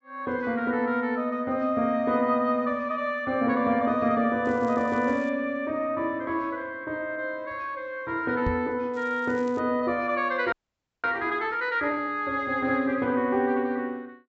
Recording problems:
treble missing; nothing above 7.7 kHz
crackle; at 4.5 s and at 9 s; loose cable, SNR 29 dB
microphone bump; at 8.5 s; peak +1 dB vs average level
frozen audio; at 11 s for 0.5 s

